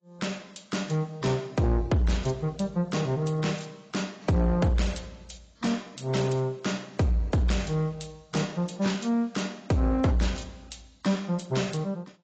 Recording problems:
lossy compression; AAC, log-spectral distance 5 dB, nothing above 7.6 kHz
distorted audio; soft clipping, signal-to-distortion ratio 12 dB

